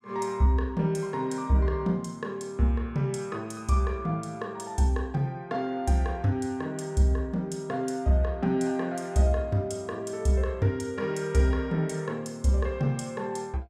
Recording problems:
none

